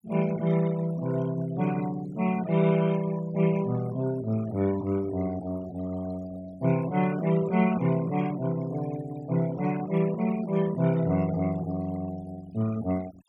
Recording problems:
noise reduction artefacts; signal-to-artefact ratio 18 dB

